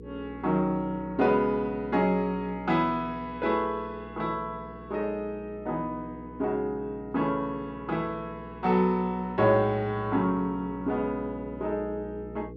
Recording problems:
mains hum; 60 Hz, harmonics up to 480 Hz, SNR 16 dB

